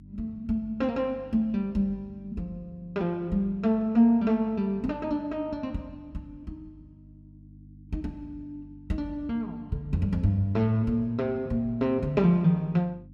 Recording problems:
electrical hum; 50 Hz, harmonics up to 300 Hz, SNR 23 dB

